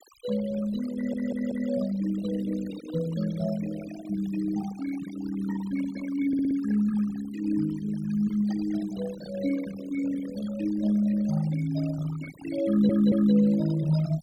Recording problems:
noise reduction artefacts; signal-to-artefact ratio 15 dB
stutter; at 1 s, at 6.5 s and at 13 s

